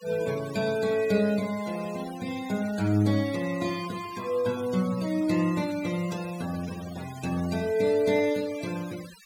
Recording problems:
denoising artefacts; signal-to-artefact ratio 16 dB

